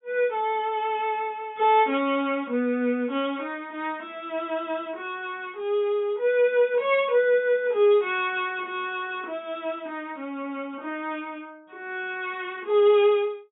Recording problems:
low-pass filter; nothing above 4 kHz

